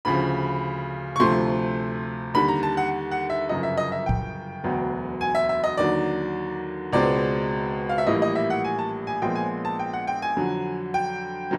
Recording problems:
knock on the microphone; at 4 s; peak +4 dB vs average level

